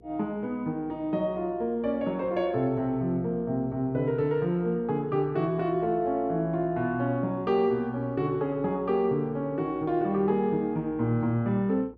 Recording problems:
electrical hum; 60 Hz, harmonics up to 480 Hz, SNR 25 dB

